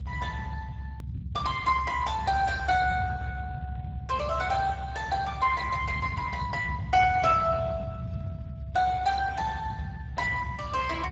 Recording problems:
codec artefacts; Speex, log-spectral distance 4 dB, nothing above 7.3 kHz
rumble; below 150 Hz, strongest tone 68 Hz, SNR 9 dB
click at an edit; at 1 s

